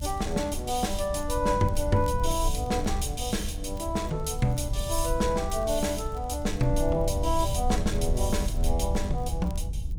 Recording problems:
low-frequency rumble; below 70 Hz, SNR 4 dB
crackling; vinyl, SNR 29 dB

